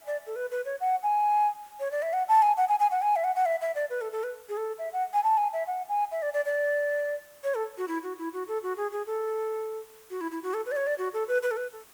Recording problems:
hiss; slope -2 dB per octave, SNR 26 dB

